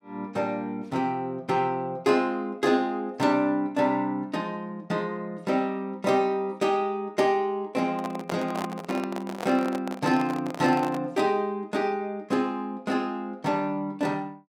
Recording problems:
microphone handling noise; from 8 to 11 s; peak -2 dB vs average level

